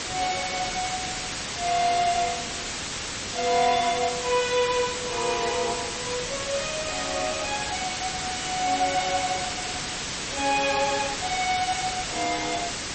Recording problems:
lossy codec; MP3, log-spectral distance 19 dB, nothing above 8.2 kHz
distorted audio; soft clipping, signal-to-distortion ratio 11 dB
background hiss; SNR 4 dB

